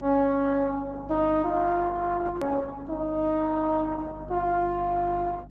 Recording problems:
lossy compression; Opus, log-spectral distance 3 dB, nothing above 13.1 kHz
hum; 50 Hz, harmonics up to 300 Hz, SNR 18 dB
edit click; at 2.5 s

